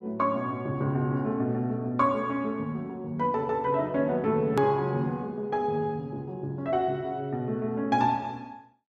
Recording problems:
click at an edit; at 4.5 s

